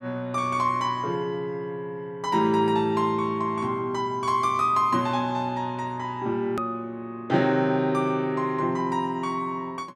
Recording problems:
edit click; at 6.5 s

